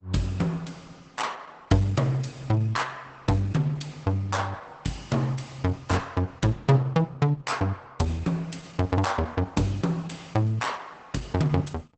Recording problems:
lossy compression; Opus, log-spectral distance 4 dB, nothing above 8.2 kHz

